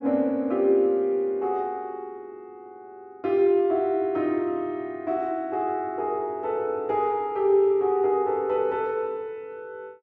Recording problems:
none

